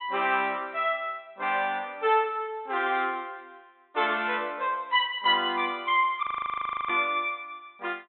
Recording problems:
low-pass filter; nothing above 3.8 kHz
frozen audio; at 6 s for 0.5 s

